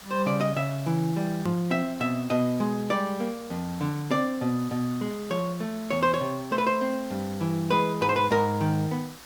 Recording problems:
background hiss; slope -1 dB per octave, SNR 18 dB
hard cut with a click; at 1.5 s

